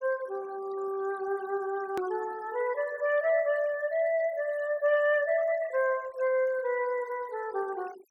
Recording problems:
denoising artefacts; signal-to-artefact ratio 22 dB
hard cut with a click; at 2 s

